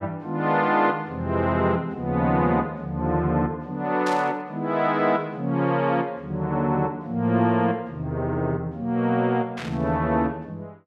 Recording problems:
burst of static; at 4 s and at 9.5 s; peak -7 dB vs average level

